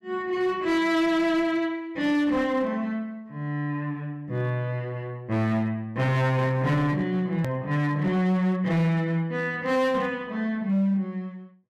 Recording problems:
distorted audio; hard clipping, signal-to-distortion ratio 12 dB
edit click; at 7.5 s

